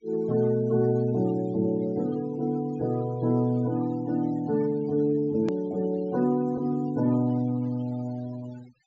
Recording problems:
low-pass filter; nothing above 8 kHz
noise reduction artefacts; signal-to-artefact ratio 23 dB
hard cut with a click; at 5.5 s

